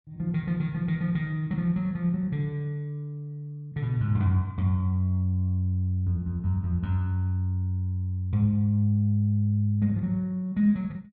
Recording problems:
none

